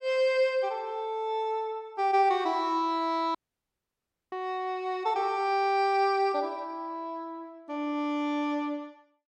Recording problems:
audio cutting out; at 3.5 s for 1 s

